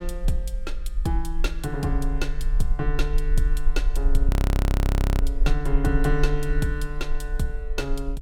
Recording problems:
low-frequency rumble; below 44 Hz, SNR -2 dB
frozen audio; at 4.5 s for 1 s

